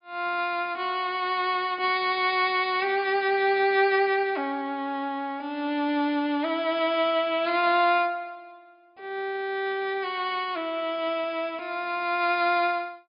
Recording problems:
treble cut off; nothing above 5 kHz

